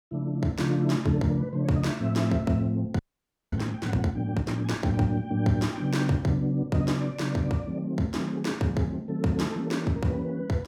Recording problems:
audio freezing; at 3 s for 0.5 s

